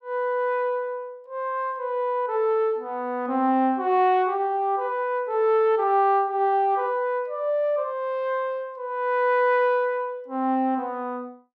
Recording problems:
none

